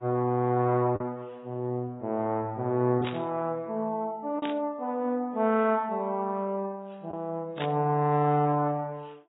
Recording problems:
lossy compression; Vorbis, then AAC, log-spectral distance 2 dB
lost packets; 1% of the sound replaced, filled with the last packet
static burst; at 3 s, at 4.5 s and at 7.5 s; peak -3 dB vs average level

